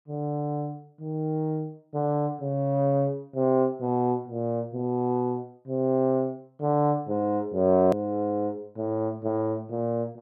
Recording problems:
click at an edit; at 8 s

